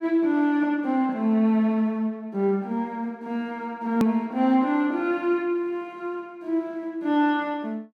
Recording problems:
click at an edit; at 4 s

